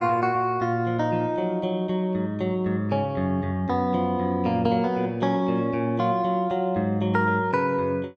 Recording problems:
none

